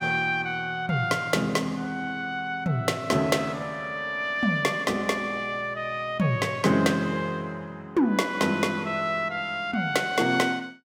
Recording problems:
none

